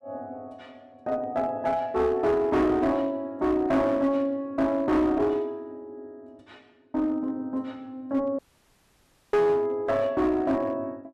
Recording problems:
distortion; hard clipping, uneven, signal-to-distortion ratio 10 dB
dropout; at 8.5 s for 1 s

